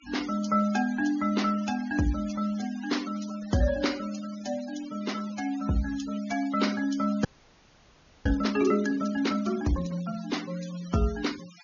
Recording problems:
treble cut off; nothing above 6.9 kHz
denoising artefacts; signal-to-artefact ratio 16 dB
frozen audio; at 7.5 s for 1 s

